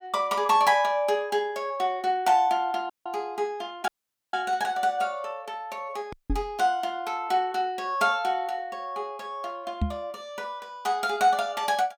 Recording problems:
audio cutting out; at 3 s, at 4 s and at 6 s
microphone thump; at 6 s and at 10 s; peak +4 dB vs average level

